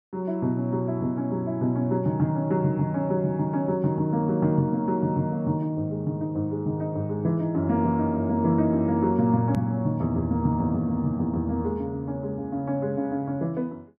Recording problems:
edit click; at 9.5 s

